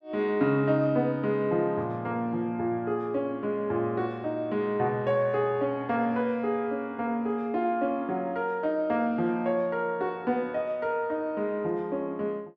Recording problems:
none

